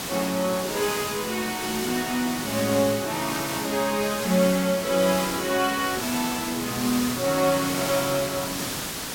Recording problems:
background hiss; slope -2 dB per octave, SNR 5 dB

